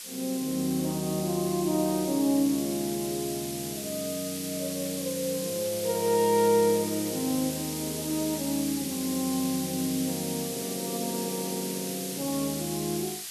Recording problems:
hiss; SNR 6 dB

